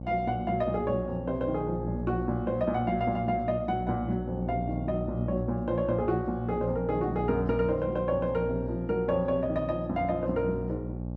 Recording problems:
hum; 60 Hz, harmonics up to 840 Hz, SNR 7 dB

